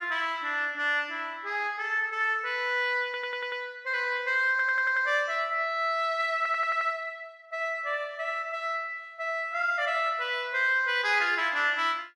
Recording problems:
stutter; at 3 s, at 4.5 s and at 6.5 s

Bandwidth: 13.5 kHz